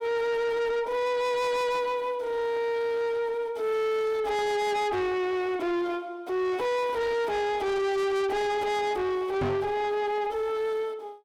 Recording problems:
distorted audio; soft clipping, signal-to-distortion ratio 5 dB
knock on the microphone; at 9.5 s; peak +4 dB vs average level

